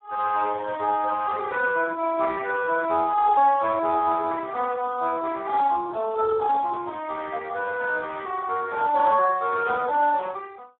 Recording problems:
telephone audio; 300 Hz to 2.3 kHz, Speex

